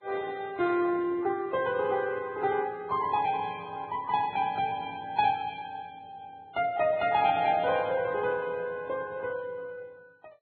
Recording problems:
lossy compression; MP2, then Vorbis, log-spectral distance 2 dB, nothing above 3.6 kHz

